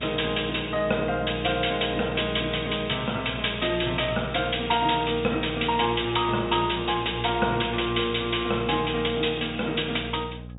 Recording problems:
treble cut off; nothing above 4 kHz
hum; 60 Hz, harmonics up to 780 Hz, SNR 13 dB

